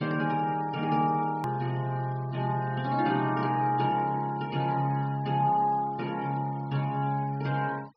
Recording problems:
treble missing; nothing above 5.5 kHz
noise reduction artefacts; signal-to-artefact ratio 24 dB
edit click; at 1.5 s

